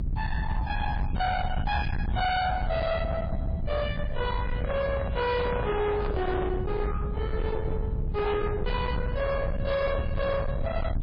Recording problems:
codec artefacts; MP3, log-spectral distance 2 dB, nothing above 5 kHz
distortion; hard clipping, signal-to-distortion ratio 7 dB
low-frequency rumble; below 180 Hz, SNR 2 dB
handling noise; from 4.5 to 6.5 s; peak 0 dB vs average level

